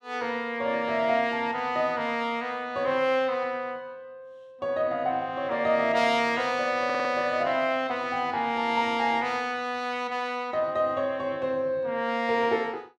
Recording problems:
audio stuttering; at 7 s

